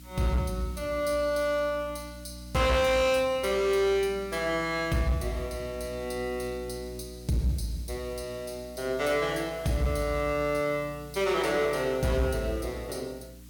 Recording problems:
distortion; hard clipping, signal-to-distortion ratio 12 dB
hum; 60 Hz, harmonics up to 300 Hz, SNR 18 dB
hiss; slope +1 dB per octave, SNR 25 dB

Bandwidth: 18 kHz